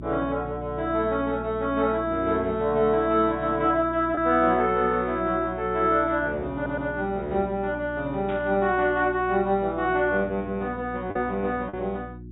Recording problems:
low-pass filter; nothing above 4 kHz
hum; 60 Hz, harmonics up to 360 Hz, SNR 15 dB
packet loss; 0.8% of the sound replaced, filled with the last packet
audio stuttering; at 6.5 s
static burst; at 8.5 s; peak -13 dB vs average level

